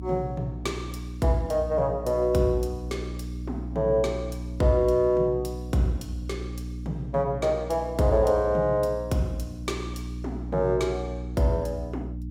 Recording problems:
hum; 60 Hz, harmonics up to 300 Hz, SNR 10 dB

